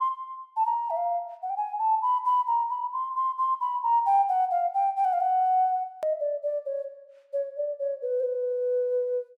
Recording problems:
edit click; at 6 s

